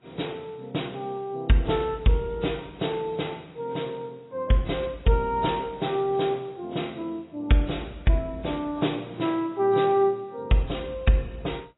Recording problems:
codec artefacts; AAC, log-spectral distance 4 dB, nothing above 3.9 kHz

